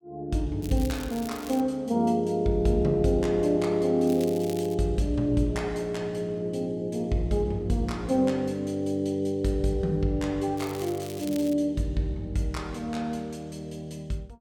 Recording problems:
crackling; from 0.5 to 1.5 s, at 4 s and at 11 s; loose cable, SNR 17 dB

